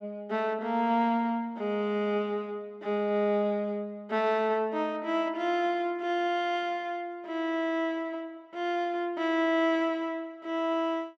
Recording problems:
none

